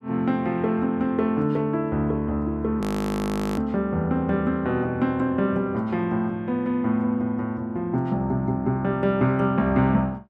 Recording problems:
frozen audio; at 3 s for 1 s

